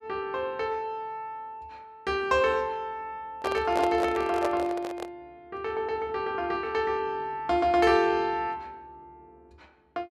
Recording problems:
handling noise; from 3.5 to 5 s; peak +1 dB vs average level

